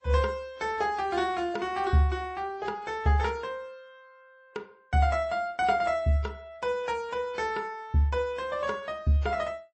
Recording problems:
codec artefacts; MP3, then AAC, log-spectral distance 2 dB, nothing above 8.2 kHz

